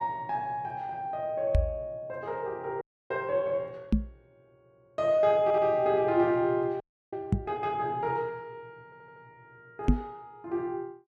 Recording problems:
knock on the microphone; 4 times, first at 1.5 s; peak +10 dB vs average level
frozen audio; at 3 s and at 7 s
audio stuttering; at 5.5 s and at 9 s

